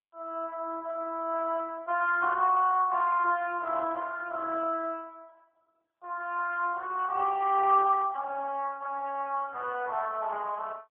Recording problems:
telephone audio; 280 Hz to 3.5 kHz, AMR-NB

